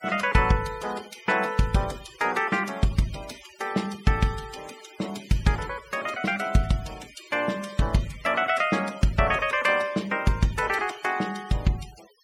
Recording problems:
denoising artefacts; signal-to-artefact ratio 20 dB

